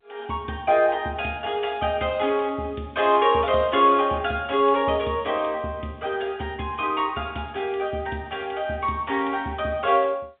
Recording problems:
phone line; 150 Hz to 3.7 kHz, G.711

